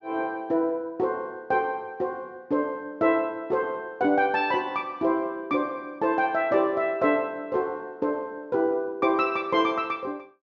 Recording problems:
treble cut off; nothing above 8 kHz

